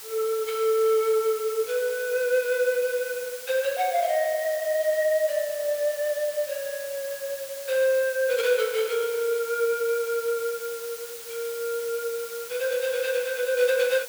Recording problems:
background hiss; slope +2 dB per octave, SNR 12 dB

